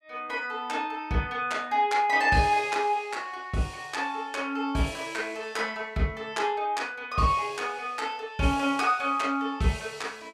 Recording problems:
none

